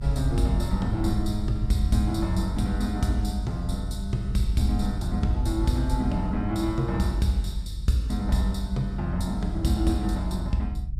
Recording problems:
rumble; below 78 Hz, strongest tone 46 Hz, SNR 5 dB

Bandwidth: 15 kHz